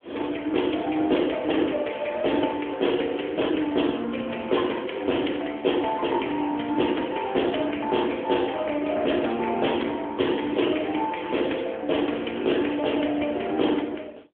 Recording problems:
phone line; 240 Hz to 3.4 kHz, AMR-NB

